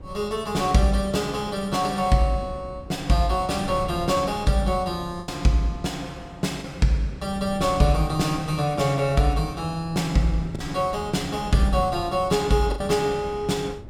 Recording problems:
wind on the microphone; below 170 Hz, SNR 17 dB
lost packets; 1.7% of the sound replaced, filled with the last packet

